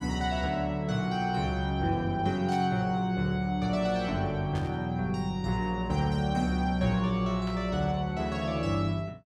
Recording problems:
static burst; at 2.5 s, at 4.5 s and at 7.5 s; peak -12 dB vs average level

